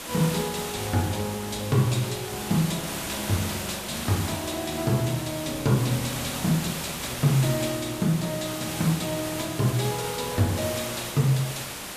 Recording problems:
hiss; slope -2 dB per octave, SNR 6 dB

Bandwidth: 14.5 kHz